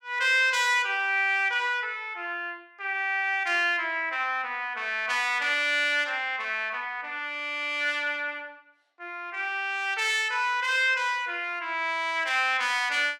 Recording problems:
none

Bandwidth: 16 kHz